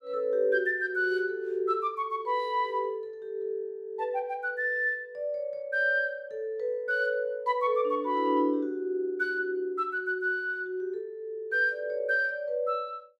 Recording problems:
none

